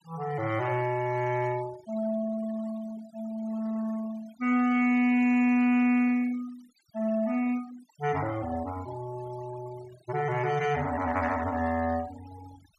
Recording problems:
denoising artefacts; signal-to-artefact ratio 20 dB

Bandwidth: 14.5 kHz